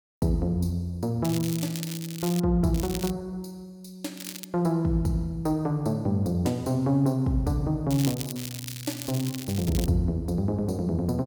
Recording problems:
crackling; 4 times, first at 1 s; loose cable, SNR 10 dB

